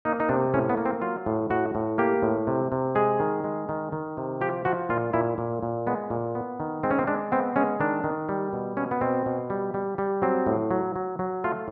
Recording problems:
treble cut off; nothing above 8 kHz

